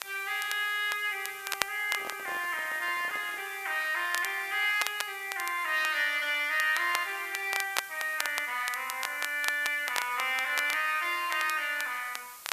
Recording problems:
hiss; slope +1 dB per octave, SNR 17 dB
crackle; vinyl, SNR 9 dB
handling noise; from 2 to 3.5 s; peak -10 dB vs average level

